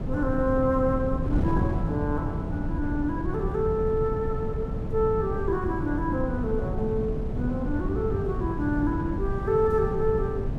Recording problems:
wind on the microphone; below 190 Hz, SNR 3 dB

